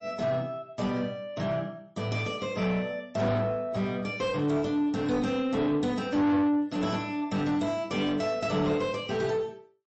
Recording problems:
lossy codec; MP3, log-spectral distance 2 dB, nothing above 8 kHz
distorted audio; soft clipping, signal-to-distortion ratio 6 dB

